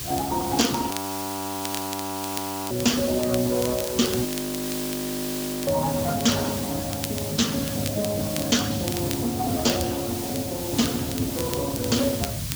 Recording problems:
lossy compression; Speex, log-spectral distance 4 dB
hiss; slope +3 dB per octave, SNR 6 dB
rumble; below 160 Hz, SNR 12 dB
crackling; vinyl, SNR 12 dB
audio freezing; at 1 s for 2 s and at 4.5 s for 1.5 s

